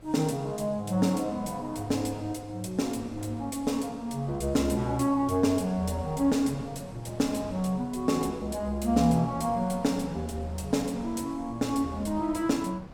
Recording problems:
wind on the microphone; below 530 Hz, SNR 18 dB

